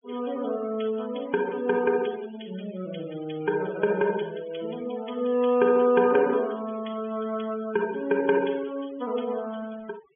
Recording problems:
treble missing; nothing above 3.4 kHz
denoising artefacts; signal-to-artefact ratio 17 dB

